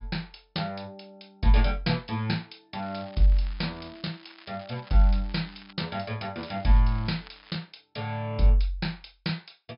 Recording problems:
low-pass filter; nothing above 5.5 kHz
crackling; from 3 to 5.5 s and from 6.5 to 7.5 s; loose cable, SNR 22 dB

